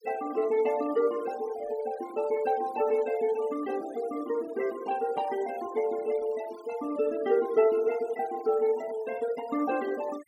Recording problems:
denoising artefacts; signal-to-artefact ratio 19 dB

